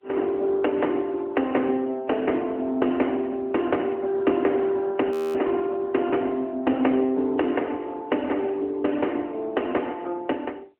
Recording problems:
phone line; 220 Hz to 3.1 kHz, AMR-NB
frozen audio; at 5 s

